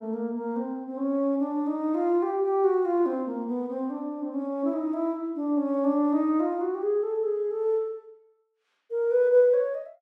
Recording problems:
none

